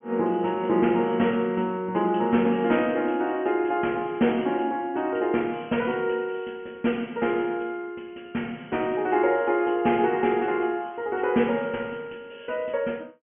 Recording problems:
treble missing; nothing above 3.2 kHz

